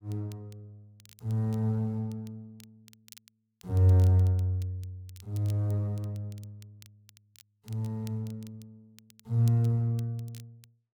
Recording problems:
crackling; vinyl, SNR 28 dB

